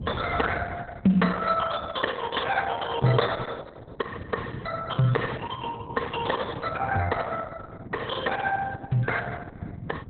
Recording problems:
codec artefacts; Opus, then Opus, log-spectral distance 4 dB, nothing above 3.8 kHz
low-frequency rumble; below 180 Hz, SNR 12 dB

